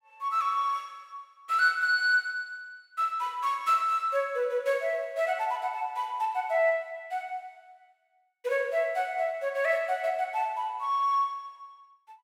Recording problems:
none

